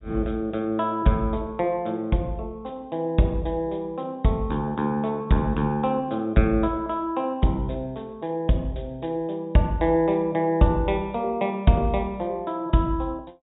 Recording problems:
treble missing; nothing above 4 kHz

